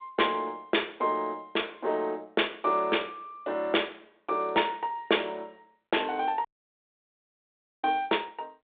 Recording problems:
telephone audio; 300 Hz to 3.7 kHz, G.726
dropout; at 6.5 s for 1.5 s

